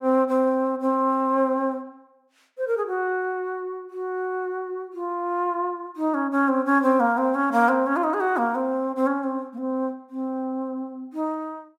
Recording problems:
none

